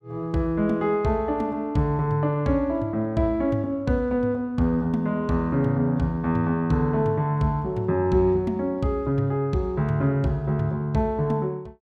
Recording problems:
none

